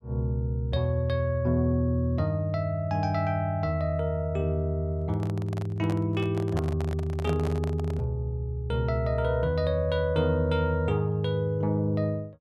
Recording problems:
microphone handling noise; from 5 to 8 s; peak -4 dB vs average level

